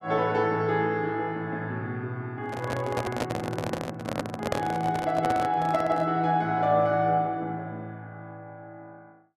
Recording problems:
microphone handling noise; from 2.5 to 6 s; peak +4 dB vs average level

